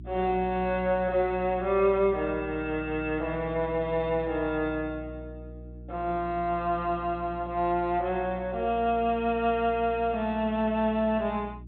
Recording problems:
low-pass filter; nothing above 4 kHz
hum; 60 Hz, harmonics up to 360 Hz, SNR 16 dB

